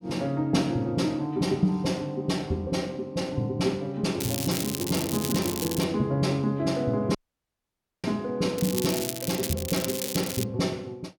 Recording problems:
crackling; from 4 to 6 s and from 8.5 to 10 s; loose cable, SNR 5 dB
dropout; at 7 s for 1 s

